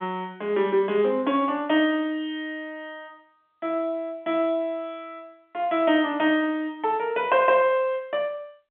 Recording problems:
phone line; 220 Hz to 3.6 kHz, G.711

